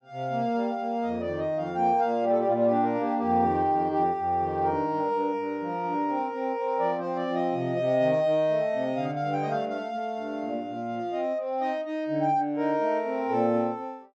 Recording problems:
none

